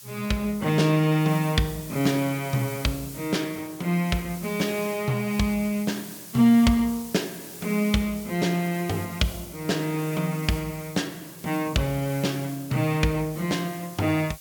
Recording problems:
background hiss; SNR 15 dB

